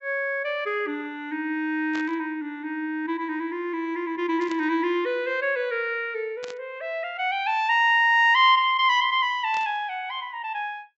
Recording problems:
treble missing; nothing above 7.8 kHz
static burst; 4 times, first at 2 s; peak -10 dB vs average level

